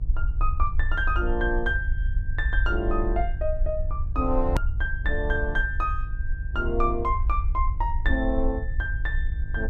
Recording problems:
hum; 50 Hz, harmonics up to 500 Hz, SNR 14 dB
rumble; below 60 Hz, SNR 1 dB
hard cut with a click; at 4.5 s

